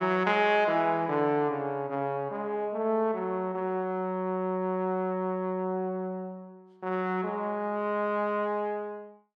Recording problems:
none

